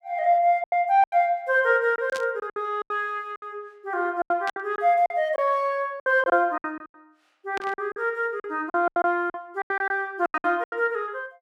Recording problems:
packet loss; 14% of the sound replaced, filled with silence
static burst; at 2 s, at 4.5 s and at 7.5 s; peak -7 dB vs average level

